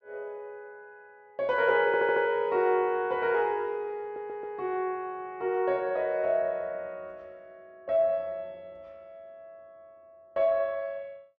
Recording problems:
audio stuttering; at 2 s and at 4 s

